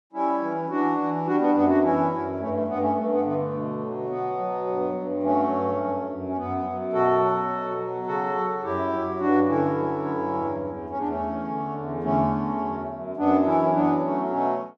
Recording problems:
none

